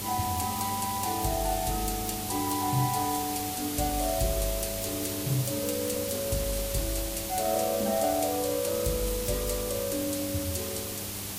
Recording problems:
lossy compression; Vorbis, log-spectral distance 12 dB, nothing above 15.5 kHz
hum; 50 Hz, harmonics up to 800 Hz, SNR 13 dB
background hiss; SNR 3 dB

